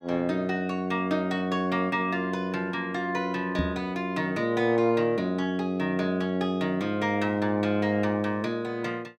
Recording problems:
knock on the microphone; at 3.5 s; peak +2 dB vs average level

